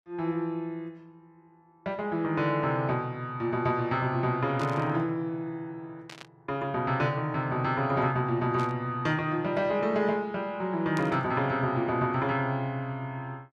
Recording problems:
burst of static; 4 times, first at 4.5 s; peak -9 dB vs average level

